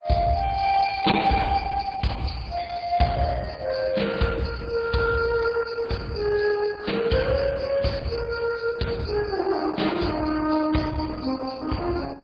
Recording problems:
codec artefacts; MP3, then Opus, log-spectral distance 6 dB, nothing above 4.6 kHz

